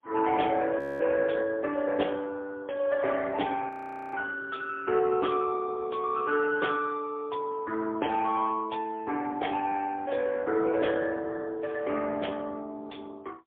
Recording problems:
telephone audio; 260 Hz to 3 kHz, AMR-NB, then MP3
frozen audio; at 1 s and at 3.5 s

